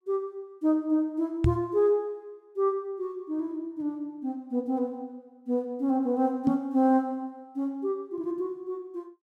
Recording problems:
microphone thump; at 1.5 s and at 6.5 s; peak +7 dB vs average level

